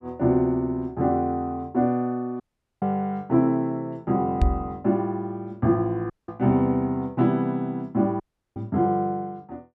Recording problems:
audio cutting out; at 2.5 s, at 6 s and at 8 s
microphone thump; at 4.5 s and at 8.5 s; peak +7 dB vs average level

